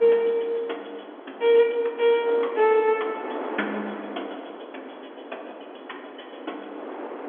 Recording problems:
phone line; 240 Hz to 3.5 kHz, G.711
wind noise; below 930 Hz, SNR 14 dB

